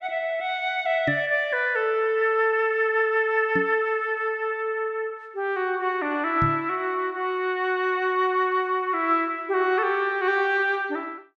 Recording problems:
knock on the microphone; at 1 s, at 3.5 s and at 6.5 s; peak 0 dB vs average level

